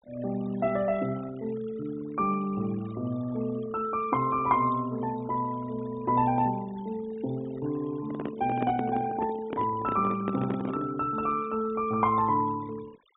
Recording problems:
treble missing; nothing above 4 kHz
denoising artefacts; signal-to-artefact ratio 20 dB
microphone handling noise; from 8 to 11 s; peak 0 dB vs average level

